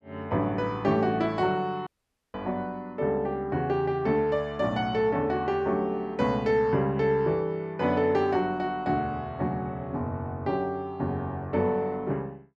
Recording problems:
audio cutting out; at 2 s

